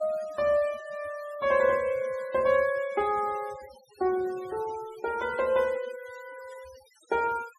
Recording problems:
denoising artefacts; signal-to-artefact ratio 22 dB

